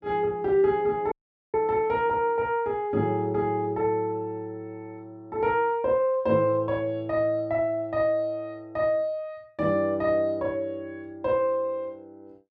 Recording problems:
audio cutting out; at 1 s

